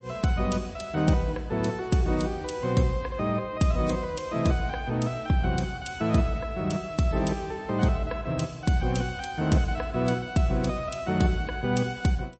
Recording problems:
lossy codec; MP3, log-spectral distance 2 dB, nothing above 8.2 kHz

